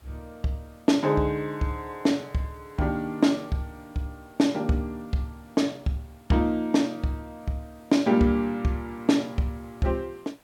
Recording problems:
background hiss; slope -4 dB per octave, SNR 30 dB

